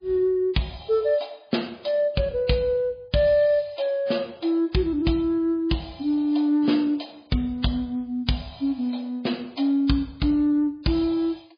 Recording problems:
lossy codec; MP3, log-spectral distance 3 dB, nothing above 4.1 kHz

